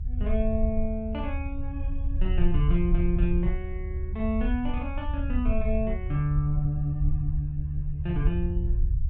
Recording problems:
rumble; below 72 Hz, SNR 0 dB

